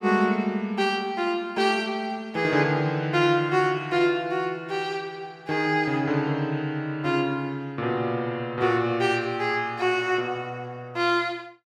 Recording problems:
none

